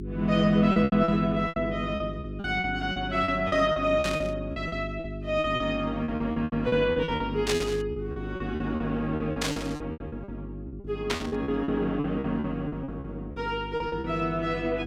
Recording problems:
hum; 50 Hz, harmonics up to 400 Hz, SNR 9 dB
packet loss; 16% of the sound replaced, filled with repeated pitch periods
static burst; 4 times, first at 4 s; peak +3 dB vs average level

